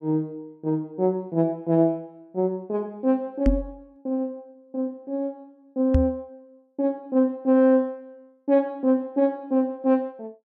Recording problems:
microphone thump; at 3.5 s and at 6 s; peak +7 dB vs average level

